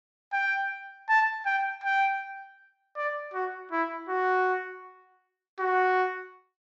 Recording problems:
low-pass filter; nothing above 7.9 kHz

